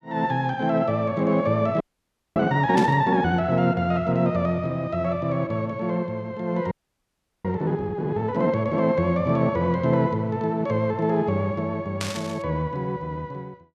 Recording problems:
audio freezing; at 2 s for 0.5 s and at 6.5 s for 0.5 s
static burst; at 3 s and at 12 s; peak -2 dB vs average level

